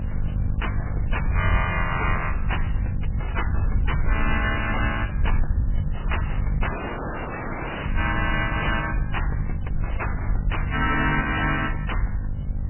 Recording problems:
lossy compression; MP3, log-spectral distance 7 dB, nothing above 2.4 kHz
distortion; soft clipping, signal-to-distortion ratio 9 dB
electrical hum; 50 Hz, harmonics up to 550 Hz, SNR 6 dB
hiss; SNR 24 dB
wind on the microphone; below 80 Hz, SNR 1 dB
audio cutting out; at 6.5 s for 1 s

